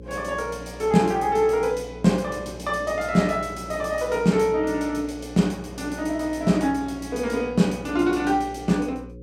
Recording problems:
mains hum; 60 Hz, harmonics up to 540 Hz, SNR 17 dB

